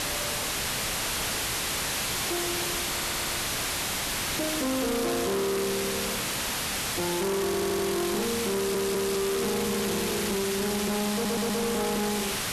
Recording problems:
distortion; hard clipping, signal-to-distortion ratio 6 dB
hiss; slope -1 dB per octave, SNR 0 dB
crackling; from 0.5 to 3.5 s, at 6.5 s and from 8 to 9.5 s; loose cable, SNR 13 dB
stutter; 4 times, first at 3 s

